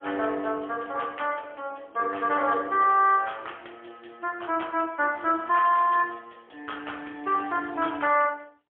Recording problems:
telephone audio; 300 Hz to 3.4 kHz, AMR-NB, then MP3

